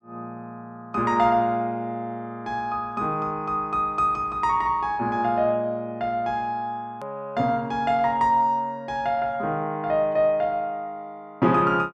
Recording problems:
hard cut with a click; at 7 s

